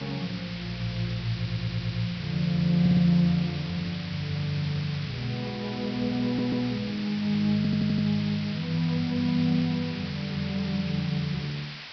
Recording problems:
lossy compression; Vorbis, log-spectral distance 14 dB, nothing above 11.3 kHz
background hiss; SNR 11 dB
stutter; 4 times, first at 1.5 s

